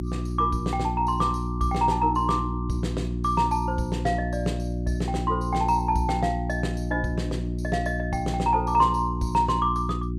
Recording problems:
hum; 60 Hz, harmonics up to 360 Hz, SNR 3 dB

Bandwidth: 15 kHz